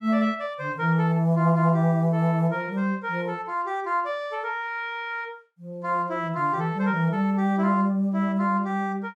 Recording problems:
none

